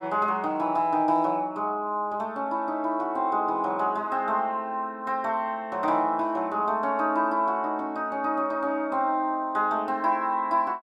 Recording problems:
none

